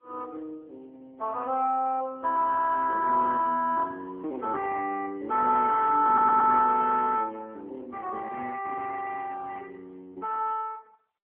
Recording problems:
telephone audio; 390 Hz to 3.1 kHz, AMR-NB
audio stuttering; at 6 s

